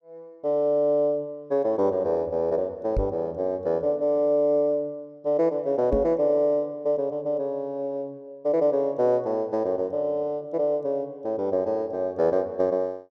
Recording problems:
microphone bump; at 3 s and at 6 s; peak 0 dB vs average level

